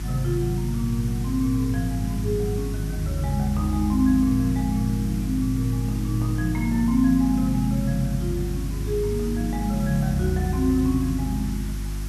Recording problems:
hum; 50 Hz, harmonics up to 350 Hz, SNR 7 dB
background hiss; SNR 17 dB

